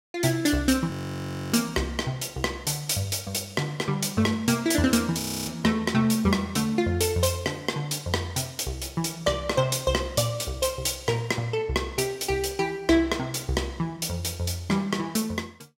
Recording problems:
frozen audio; at 1 s for 0.5 s and at 5 s

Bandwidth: 16 kHz